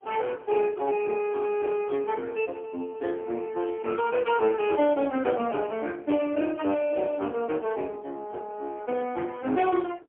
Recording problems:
telephone audio; 220 Hz to 3.2 kHz, AMR-NB, then MP3
burst of static; at 3.5 s and at 5 s; peak -18 dB vs average level

